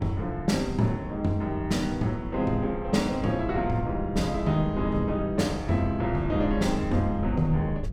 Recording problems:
hum; 50 Hz, harmonics up to 700 Hz, SNR 24 dB
wind on the microphone; below 110 Hz, SNR 10 dB

